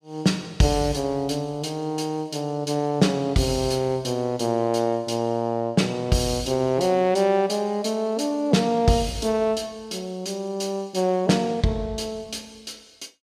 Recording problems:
none

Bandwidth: 14.5 kHz